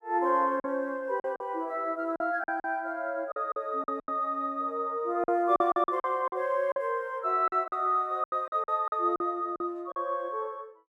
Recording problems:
packet loss; 10% of the sound replaced, filled with silence

